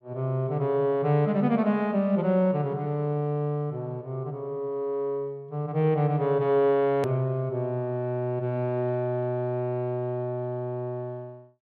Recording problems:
click at an edit; at 7 s

